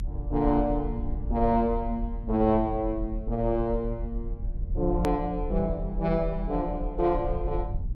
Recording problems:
low-frequency rumble; below 56 Hz, strongest tone 36 Hz, SNR 7 dB
click at an edit; at 5 s

